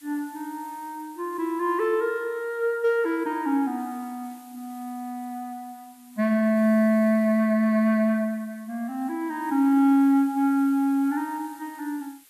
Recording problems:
hiss; slope +2 dB per octave, SNR 27 dB

